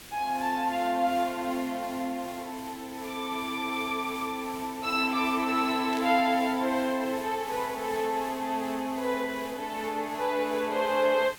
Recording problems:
background hiss; SNR 16 dB
static burst; at 6 s; peak -9 dB vs average level

